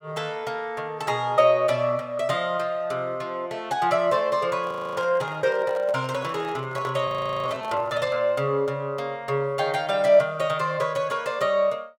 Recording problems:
microphone handling noise; from 4.5 to 8 s; peak -9 dB vs average level
audio freezing; at 4.5 s and at 7 s

